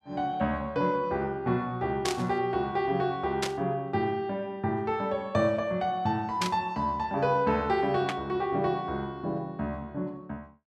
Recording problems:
burst of static; 4 times, first at 2 s; peak +3 dB vs average level

